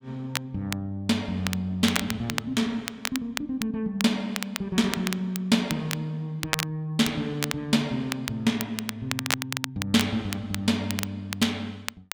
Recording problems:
crackle; vinyl, SNR 6 dB

